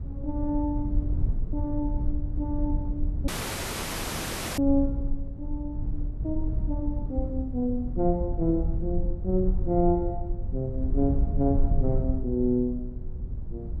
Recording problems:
low-frequency rumble; below 78 Hz, SNR 2 dB
dropout; at 3.5 s for 1.5 s

